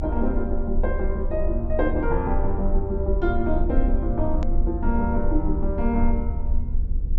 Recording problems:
treble missing; nothing above 8 kHz
electrical hum; 50 Hz, harmonics up to 500 Hz, SNR 26 dB
rumble; below 64 Hz, strongest tone 22 Hz, SNR 1 dB
click at an edit; at 4.5 s

